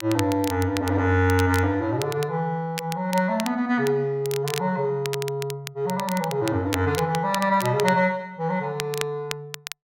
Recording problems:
crackle; vinyl, SNR 12 dB

